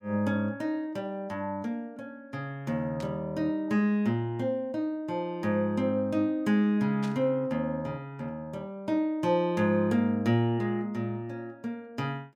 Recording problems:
static burst; at 3 s and at 7 s; peak -9 dB vs average level

